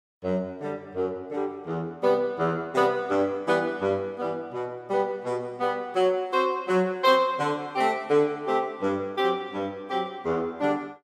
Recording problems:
none

